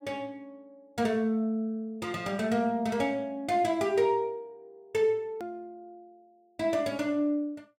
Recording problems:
hard cut with a click; at 5.5 s

